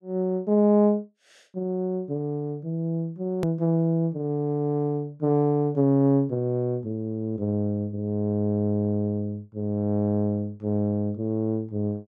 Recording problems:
hard cut with a click; at 3.5 s

